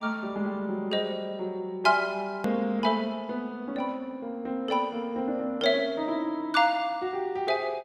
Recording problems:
click at an edit; at 2.5 s

